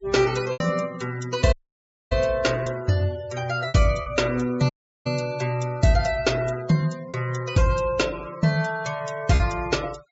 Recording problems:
treble cut off; nothing above 8 kHz
noise reduction artefacts; signal-to-artefact ratio 18 dB
packet loss; 3% of the sound replaced, filled with repeated pitch periods
dropout; at 1.5 s for 0.5 s and at 4.5 s

